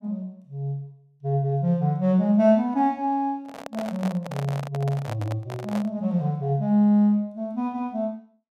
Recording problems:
microphone handling noise; from 3.5 to 6 s; peak -6 dB vs average level

